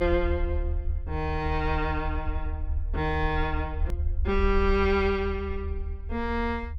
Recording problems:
rumble; below 74 Hz, SNR 3 dB
edit click; at 4 s

